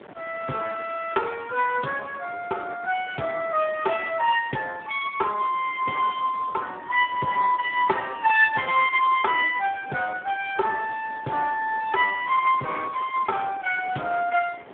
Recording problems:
telephone audio; 320 Hz to 3.5 kHz, Speex
wind on the microphone; below 1.2 kHz, SNR 20 dB

